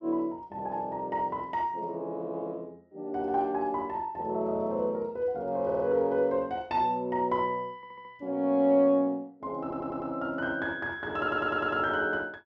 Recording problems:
stutter; 4 times, first at 5.5 s

